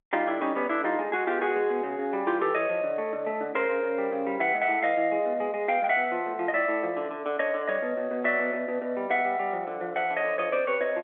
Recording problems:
phone line; 280 Hz to 3.5 kHz, G.711

